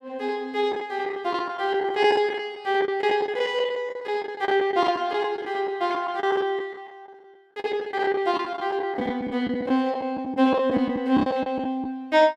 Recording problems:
lost packets; 12% of the sound replaced, filled with the last packet

